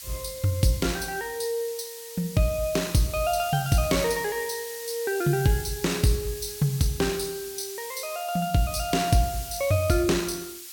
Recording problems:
hiss; slope +5 dB per octave, SNR 11 dB

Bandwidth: 17 kHz